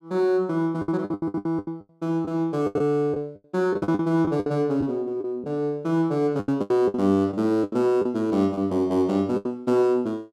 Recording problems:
lost packets; 13% of the sound replaced, filled with the last packet

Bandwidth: 14 kHz